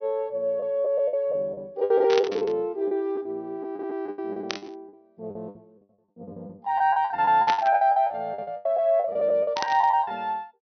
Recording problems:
treble missing; nothing above 6.2 kHz
lost packets; 17% of the sound replaced, filled with the last packet
burst of static; 4 times, first at 2 s; peak 0 dB vs average level

